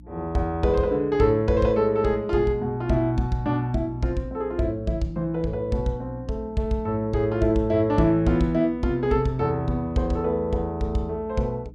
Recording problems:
electrical hum; 60 Hz, harmonics up to 300 Hz, SNR 20 dB

